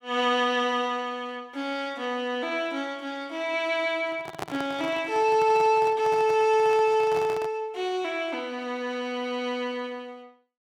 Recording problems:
microphone handling noise; from 4 to 7.5 s; peak -2 dB vs average level

